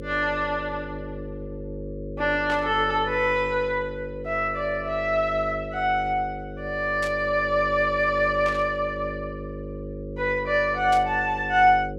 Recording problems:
hum; 50 Hz, harmonics up to 550 Hz, SNR 12 dB
static burst; 4 times, first at 2.5 s; peak -8 dB vs average level

